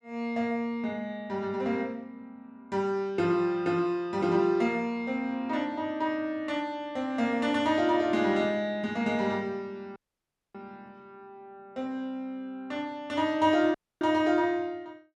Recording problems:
audio cutting out; at 10 s for 0.5 s and at 14 s

